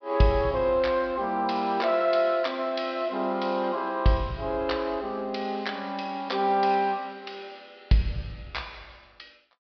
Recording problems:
treble missing; nothing above 5.5 kHz

